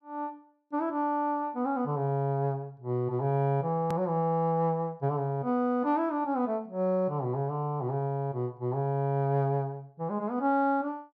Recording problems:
click at an edit; at 4 s

